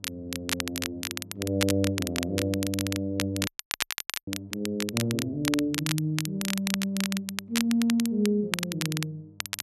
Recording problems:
electrical hum; 50 Hz, harmonics up to 700 Hz, SNR 22 dB
crackle; vinyl, SNR 3 dB
audio freezing; at 3.5 s for 1 s

